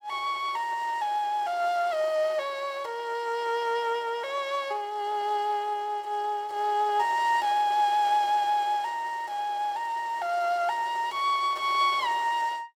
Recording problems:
none

